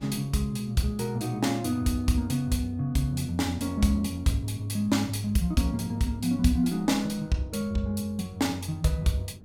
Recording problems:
wind noise; below 270 Hz, SNR 22 dB

